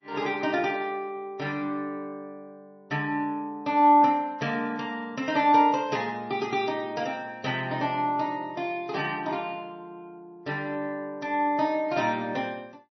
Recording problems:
lossy compression; MP3, log-spectral distance 2 dB, nothing above 5.8 kHz

